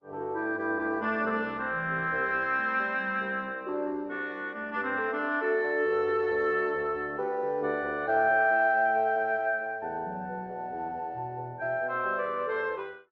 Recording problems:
lossy compression; Opus, log-spectral distance 2 dB

